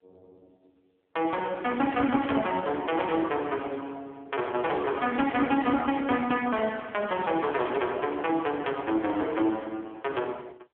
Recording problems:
phone line; 280 Hz to 3.4 kHz, AMR-NB

